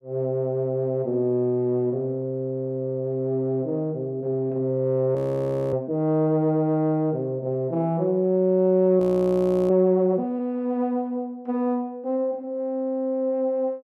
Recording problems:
frozen audio; at 5 s for 0.5 s and at 9 s for 0.5 s

